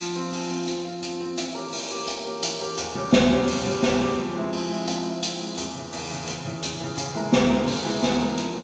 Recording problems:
lossy codec; MP3, then G.722, log-spectral distance 7 dB

